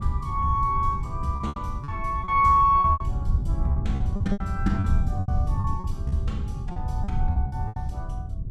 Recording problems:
wind on the microphone; below 100 Hz, SNR 4 dB
lost packets; 12% of the sound replaced, filled with repeated pitch periods

